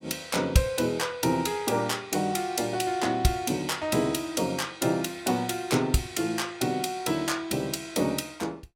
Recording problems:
none

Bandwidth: 16.5 kHz